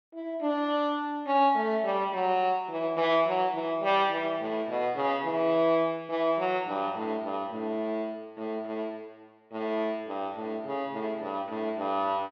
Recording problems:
none

